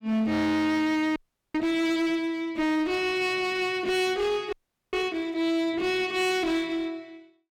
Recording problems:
distortion; hard clipping, uneven, signal-to-distortion ratio 9 dB
audio freezing; at 1 s and at 4.5 s

